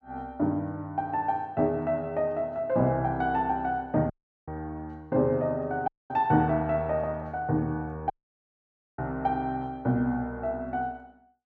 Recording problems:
audio cutting out; at 4 s, at 6 s and at 8 s for 1 s

